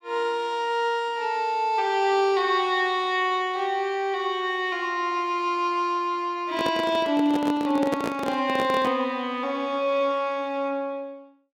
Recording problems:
handling noise; from 6.5 to 9 s; peak 0 dB vs average level

